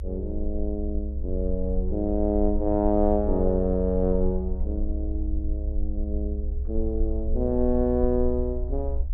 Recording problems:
low-frequency rumble; below 66 Hz, SNR 4 dB

